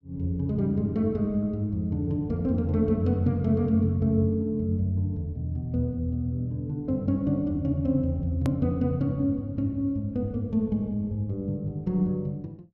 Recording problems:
hard cut with a click; at 8.5 s

